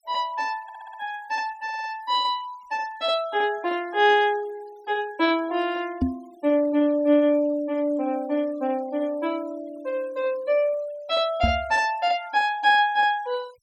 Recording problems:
noise reduction artefacts; signal-to-artefact ratio 25 dB
stutter; at 0.5 s and at 1.5 s
microphone thump; at 6 s and at 11 s; peak +4 dB vs average level

